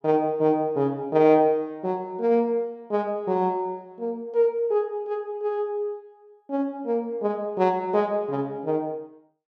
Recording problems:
none

